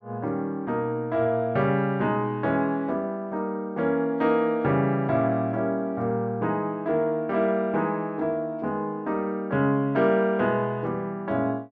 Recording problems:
none

